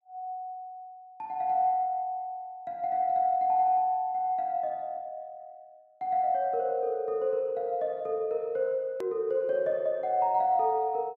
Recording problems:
hard cut with a click; at 9 s

